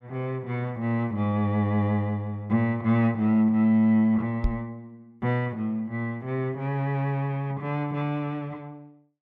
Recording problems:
knock on the microphone; at 4.5 s; peak +4 dB vs average level

